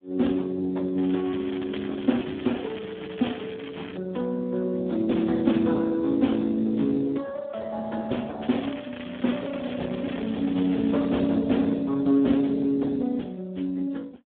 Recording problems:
phone line; 170 Hz to 3.7 kHz, Speex
crackle; from 1 to 4 s and from 8.5 to 11 s; loose cable, SNR 18 dB

